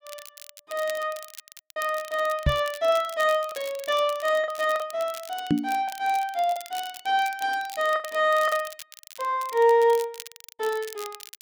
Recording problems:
crackle; vinyl, SNR 17 dB
packet loss; 4% of the sound replaced, filled with the last packet
knock on the microphone; at 2.5 s and at 5.5 s; peak +7 dB vs average level

